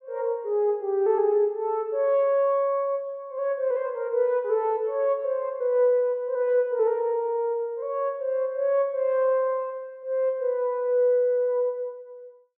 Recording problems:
none

